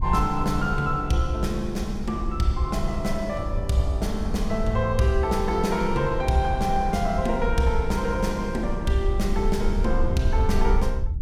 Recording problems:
wind on the microphone; below 60 Hz, SNR 6 dB

